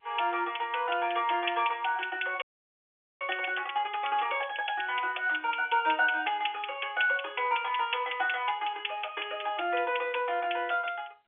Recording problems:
phone line; 300 Hz to 3.5 kHz, G.711
audio freezing; at 2.5 s for 1 s

